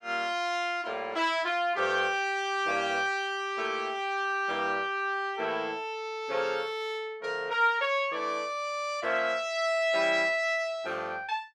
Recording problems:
none

